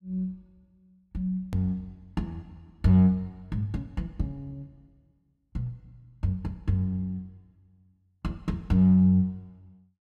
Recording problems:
hard cut with a click; at 1.5 s

